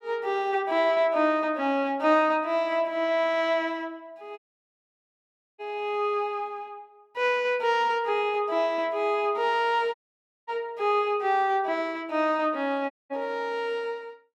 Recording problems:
dropout; at 4.5 s for 1 s, at 10 s for 0.5 s and at 13 s

